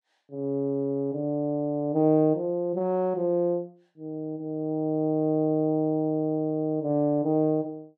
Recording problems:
none

